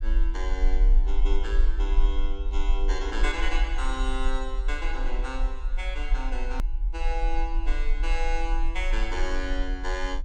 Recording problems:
low-frequency rumble; below 40 Hz, strongest tone 20 Hz, SNR -5 dB
click at an edit; at 6.5 s

